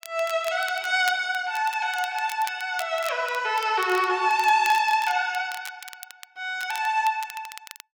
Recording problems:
crackling; vinyl, SNR 17 dB

